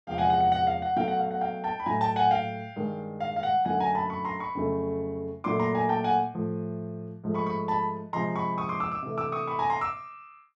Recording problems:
none

